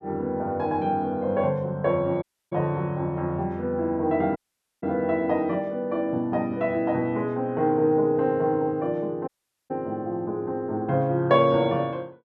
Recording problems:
audio cutting out; at 2 s, at 4.5 s and at 9.5 s

